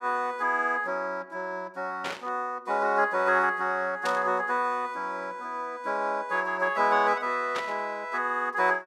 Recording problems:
static burst; at 2 s, at 4 s and at 7.5 s; peak -3 dB vs average level

